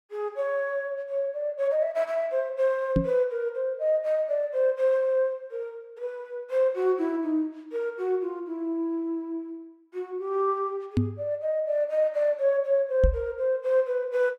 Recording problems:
knock on the microphone; at 3 s, at 11 s and at 13 s; peak +7 dB vs average level

